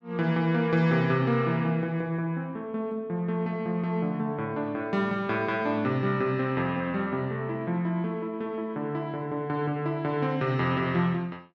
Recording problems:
none

